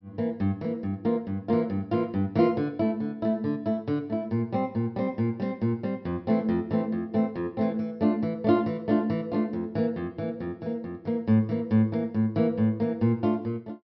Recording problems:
low-pass filter; nothing above 5.5 kHz

